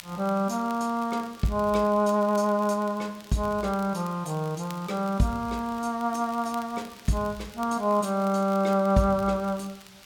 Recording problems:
background hiss; slope 0 dB per octave, SNR 23 dB
crackle; vinyl, SNR 24 dB

